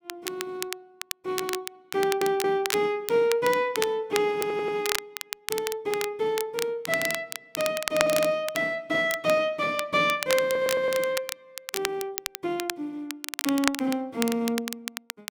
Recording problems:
crackle; vinyl, SNR 7 dB
audio stuttering; 4 times, first at 2 s

